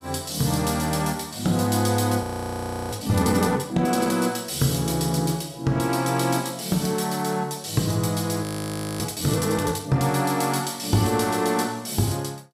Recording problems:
frozen audio; at 2 s for 0.5 s and at 8.5 s for 0.5 s

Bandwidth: 15.5 kHz